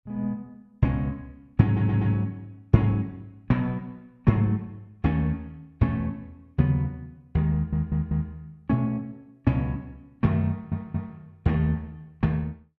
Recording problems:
audio stuttering; at 1.5 s, at 7.5 s and at 10 s

